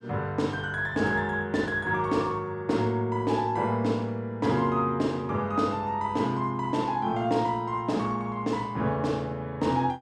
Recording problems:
none

